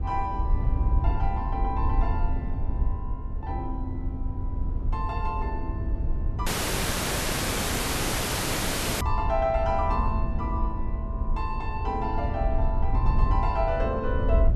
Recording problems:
low-frequency rumble; below 78 Hz, SNR -2 dB
dropout; at 6.5 s for 2.5 s

